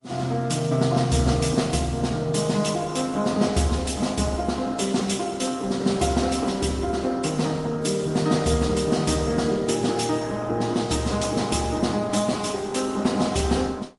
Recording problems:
lossy codec; Opus, then MP3, log-spectral distance 5 dB, nothing above 11 kHz

